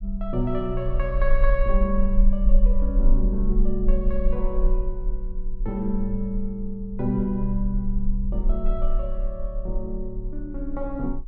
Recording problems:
low-frequency rumble; below 38 Hz, SNR -1 dB

